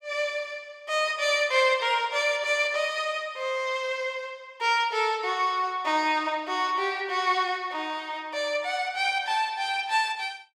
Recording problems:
none

